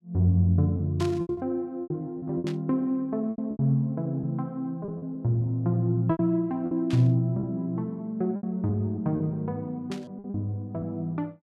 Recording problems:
lost packets; 9% of the sound replaced, filled with repeated pitch periods
burst of static; 4 times, first at 1 s; peak -8 dB vs average level

